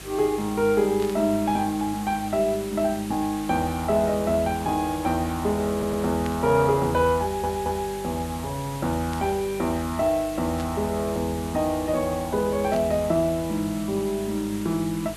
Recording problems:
hum; 50 Hz, harmonics up to 550 Hz, SNR 19 dB
background hiss; slope -1 dB per octave, SNR 15 dB
burst of static; 5 times, first at 1 s; peak -9 dB vs average level
audio stuttering; at 5.5 s and at 7 s

